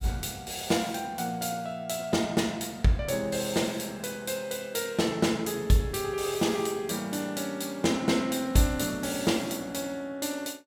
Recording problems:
none

